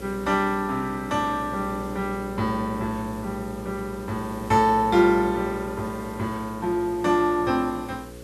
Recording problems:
electrical hum; 60 Hz, harmonics up to 540 Hz, SNR 13 dB
background hiss; slope -2 dB per octave, SNR 23 dB

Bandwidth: 13 kHz